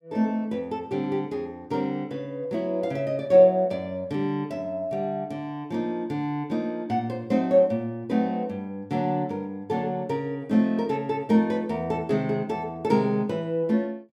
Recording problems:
none

